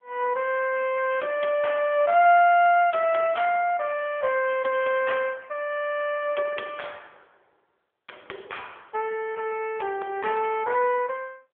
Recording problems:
phone line; 340 Hz to 3.4 kHz, AMR-NB

